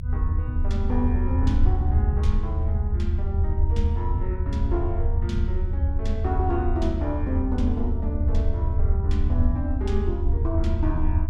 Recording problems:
rumble; below 78 Hz, SNR -5 dB

